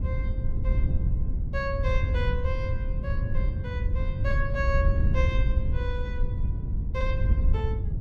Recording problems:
wind noise; below 88 Hz, SNR -7 dB

